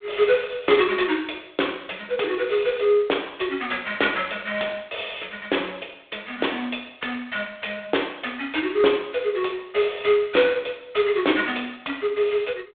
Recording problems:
telephone audio; 280 Hz to 3.6 kHz, G.726

